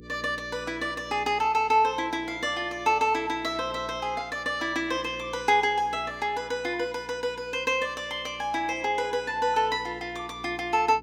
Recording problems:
hum; 60 Hz, harmonics up to 480 Hz, SNR 21 dB

